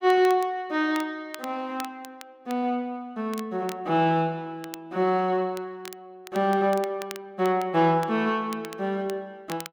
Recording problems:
crackle; vinyl, SNR 19 dB

